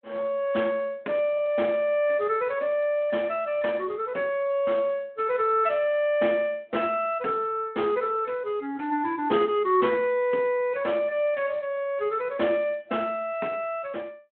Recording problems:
phone line; 260 Hz to 3.2 kHz, Speex

